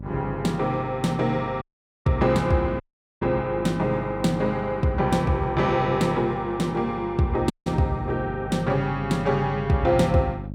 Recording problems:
hum; 50 Hz, harmonics up to 600 Hz, SNR 13 dB
dropout; at 1.5 s, at 3 s and at 7.5 s

